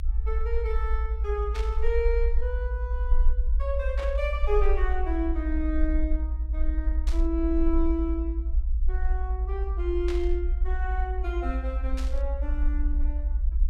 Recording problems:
rumble; below 58 Hz, SNR -3 dB
static burst; 5 times, first at 1.5 s; peak -4 dB vs average level

